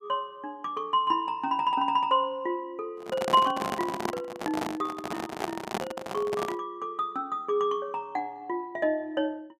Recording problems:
microphone handling noise; from 3 to 6.5 s; peak +2 dB vs average level

